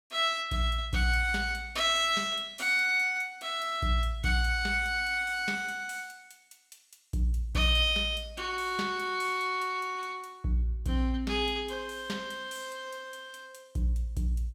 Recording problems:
none

